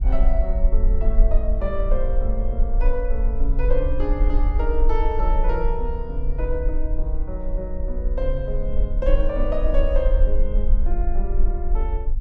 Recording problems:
low-frequency rumble; below 42 Hz, SNR -5 dB

